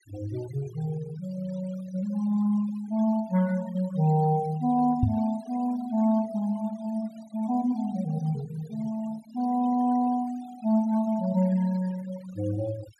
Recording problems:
noise reduction artefacts; signal-to-artefact ratio 21 dB
microphone thump; at 5 s; peak +7 dB vs average level

